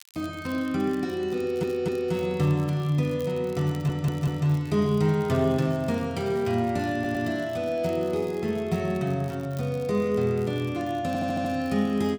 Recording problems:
crackle; vinyl, SNR 27 dB
stutter; 4 times, first at 1.5 s

